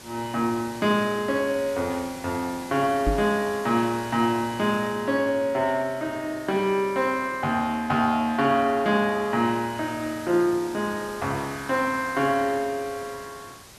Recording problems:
hiss; slope -2 dB per octave, SNR 18 dB
microphone bump; at 3 s; peak +2 dB vs average level

